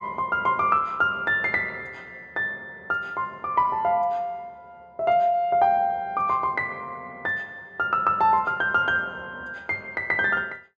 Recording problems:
none

